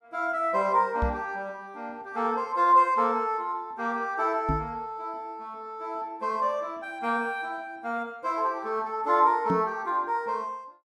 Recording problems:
microphone thump; at 1 s, at 4.5 s and at 9.5 s; peak +2 dB vs average level

